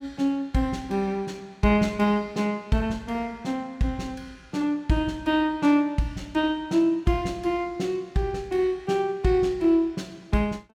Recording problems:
none

